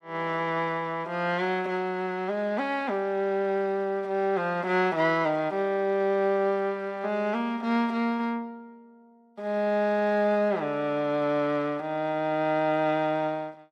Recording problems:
none

